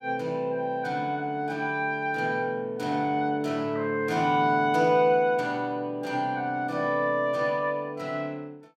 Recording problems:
none

